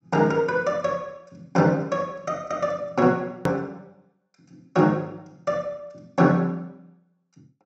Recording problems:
low-pass filter; nothing above 8 kHz
edit click; at 3.5 s

